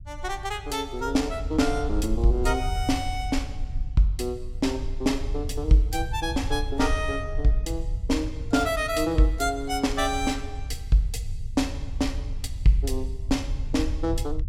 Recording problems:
low-frequency rumble; below 74 Hz, SNR 7 dB

